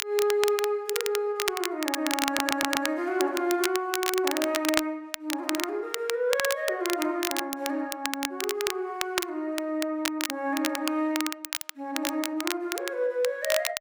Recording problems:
crackling; vinyl, SNR 3 dB
audio stuttering; at 2.5 s

